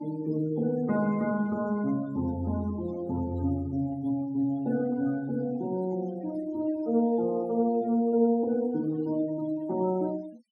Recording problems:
noise reduction artefacts; signal-to-artefact ratio 21 dB

